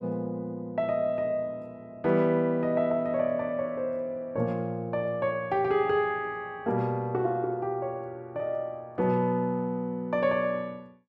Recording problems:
none

